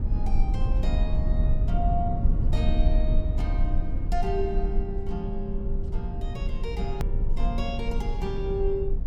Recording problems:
rumble; below 60 Hz, SNR -5 dB
edit click; at 7 s

